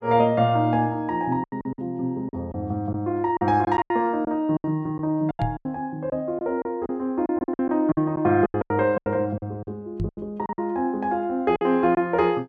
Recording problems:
lost packets; 12% of the sound replaced, filled with silence
microphone thump; at 5.5 s and at 10 s; peak 0 dB vs average level

